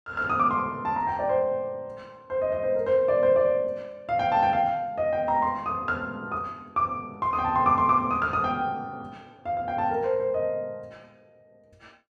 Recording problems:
none

